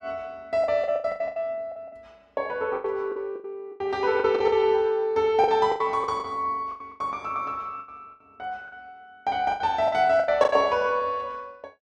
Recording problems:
lost packets; 14% of the sound replaced, filled with the last packet

